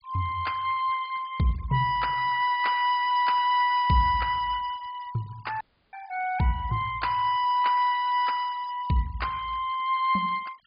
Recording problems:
treble missing; nothing above 5 kHz
denoising artefacts; signal-to-artefact ratio 23 dB
audio cutting out; at 5.5 s

